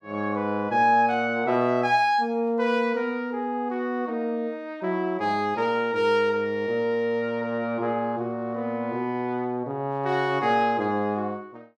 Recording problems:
none

